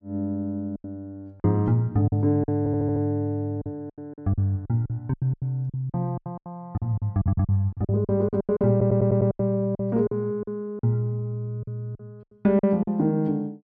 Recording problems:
packet loss; 14% of the sound replaced, filled with silence
stutter; at 2.5 s, at 7 s and at 8.5 s

